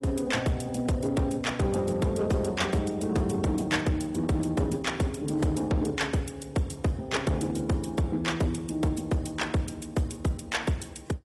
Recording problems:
lossy compression; AAC, log-spectral distance 3 dB, nothing above 11.3 kHz
distortion; hard clipping, signal-to-distortion ratio 12 dB

